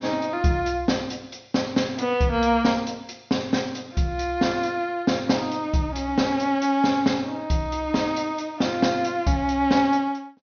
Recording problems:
low-pass filter; nothing above 6.3 kHz

